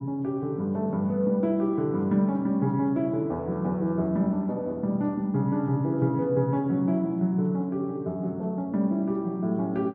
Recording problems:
none

